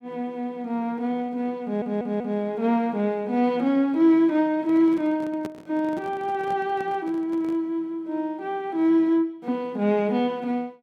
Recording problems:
audio stuttering; at 1.5 s
microphone handling noise; from 4.5 to 7.5 s; peak -7 dB vs average level

